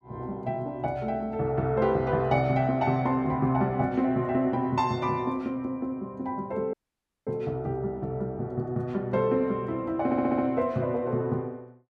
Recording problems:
audio cutting out; at 6.5 s for 0.5 s
stutter; at 10 s

